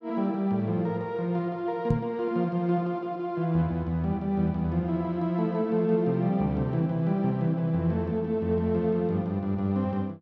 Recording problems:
microphone thump; at 2 s; peak +6 dB vs average level

